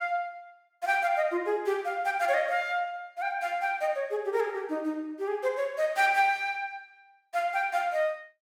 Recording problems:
none

